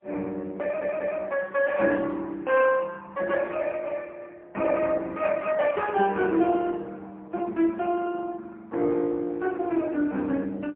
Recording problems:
telephone audio; 220 Hz to 3.4 kHz, AMR-NB, then MP3
audio stuttering; at 0.5 s

